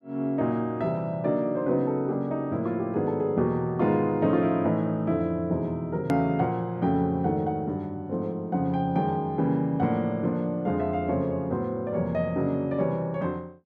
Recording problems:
hard cut with a click; at 6 s

